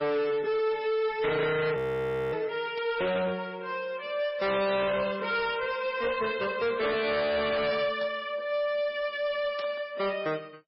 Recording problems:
lossy compression; MP3, log-spectral distance 3 dB, nothing above 4.8 kHz
distortion; hard clipping, signal-to-distortion ratio 7 dB
frozen audio; at 2 s for 0.5 s
static burst; 4 times, first at 3 s; peak -8 dB vs average level

